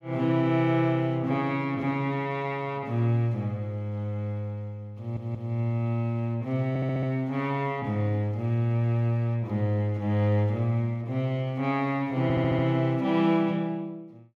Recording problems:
audio stuttering; at 5 s, at 6.5 s and at 12 s

